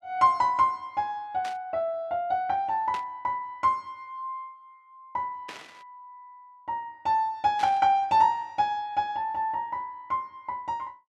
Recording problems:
burst of static; 4 times, first at 1.5 s; peak -8 dB vs average level

